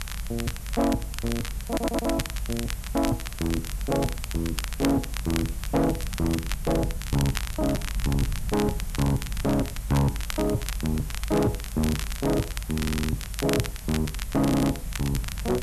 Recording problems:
distorted audio; hard clipping, signal-to-distortion ratio 12 dB
background hiss; SNR 15 dB
rumble; below 64 Hz, strongest tone 50 Hz, SNR 8 dB
crackling; vinyl, SNR 9 dB
stutter; at 1.5 s, at 13 s and at 14 s

